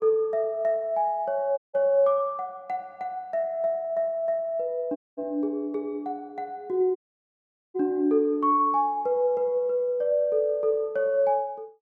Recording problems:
audio cutting out; at 1.5 s, at 5 s and at 7 s for 1 s

